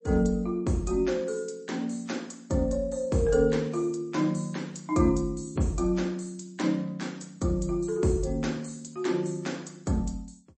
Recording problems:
lossy compression; MP3, log-spectral distance 3 dB, nothing above 8.2 kHz

